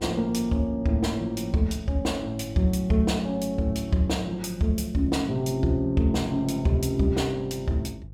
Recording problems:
hum; 50 Hz, harmonics up to 350 Hz, SNR 19 dB

